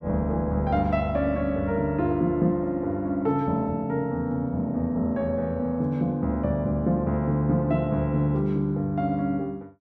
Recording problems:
none

